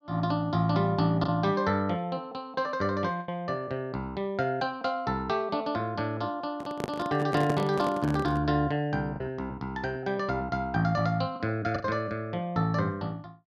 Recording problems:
lost packets; 2% of the sound replaced, filled with the last packet
microphone handling noise; from 6.5 to 8.5 s; peak +2 dB vs average level

